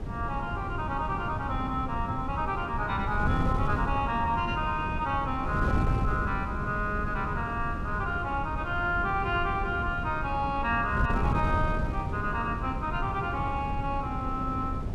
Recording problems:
wind noise; below 200 Hz, SNR 3 dB

